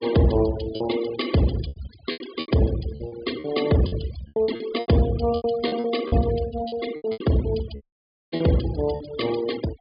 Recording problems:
treble missing; nothing above 4.9 kHz
denoising artefacts; signal-to-artefact ratio 14 dB
lost packets; 14% of the sound replaced, filled with repeated pitch periods
dropout; at 8 s for 0.5 s

